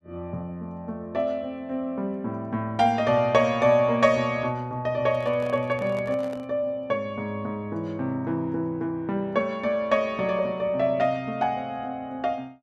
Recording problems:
handling noise; from 5 to 6.5 s; peak -10 dB vs average level

